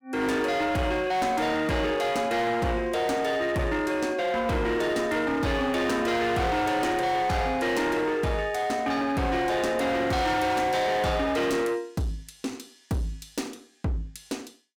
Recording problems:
distortion; hard clipping, signal-to-distortion ratio 8 dB

